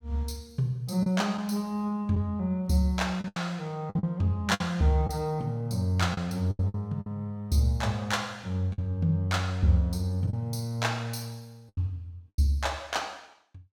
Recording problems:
packet loss; 6% of the sound replaced, filled with the last packet

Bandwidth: 17.5 kHz